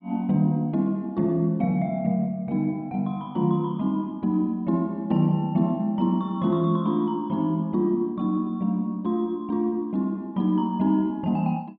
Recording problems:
none

